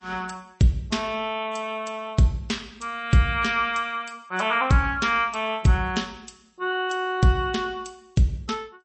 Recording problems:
lossy compression; MP3, log-spectral distance 3 dB, nothing above 8.2 kHz

